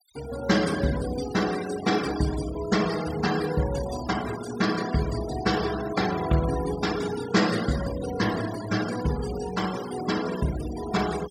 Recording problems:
noise reduction artefacts; signal-to-artefact ratio 11 dB

